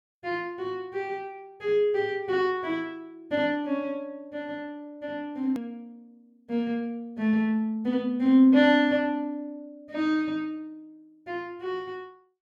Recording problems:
hard cut with a click; at 5.5 s

